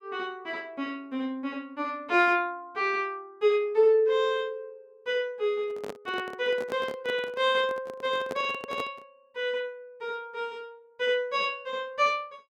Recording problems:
handling noise; from 5.5 to 9 s; peak -4 dB vs average level

